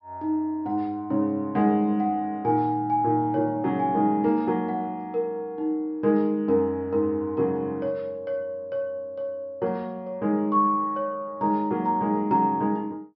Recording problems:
treble missing; nothing above 5.6 kHz

